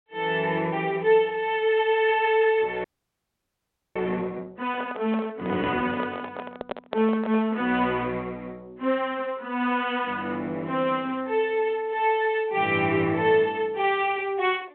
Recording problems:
phone line; 190 Hz to 3.5 kHz, G.726
frozen audio; at 3 s for 1 s
handling noise; from 4.5 to 7.5 s; peak -3 dB vs average level

